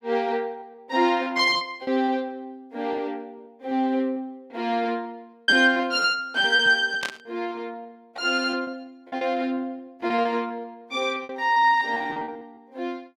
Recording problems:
lost packets; 13% of the sound replaced, filled with repeated pitch periods
static burst; at 7 s; peak -3 dB vs average level

